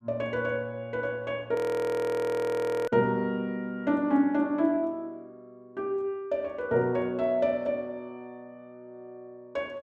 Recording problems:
audio freezing; at 1.5 s for 1.5 s

